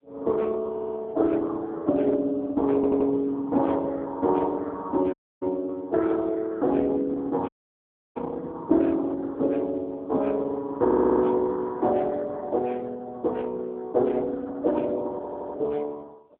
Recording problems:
phone line; 240 Hz to 2.5 kHz, AMR-NB
stutter; 4 times, first at 0.5 s
dropout; at 5 s and at 7.5 s for 0.5 s

